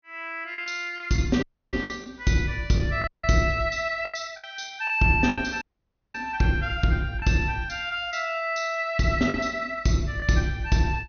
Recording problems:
low-pass filter; nothing above 6.6 kHz
packet loss; 5% of the sound replaced, filled with the last packet
dropout; at 1.5 s, at 3 s and at 5.5 s for 0.5 s

